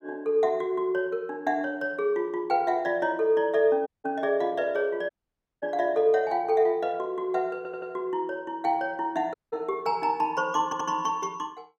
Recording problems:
dropout; at 4 s, at 5 s for 0.5 s and at 9.5 s
stutter; at 7.5 s and at 11 s

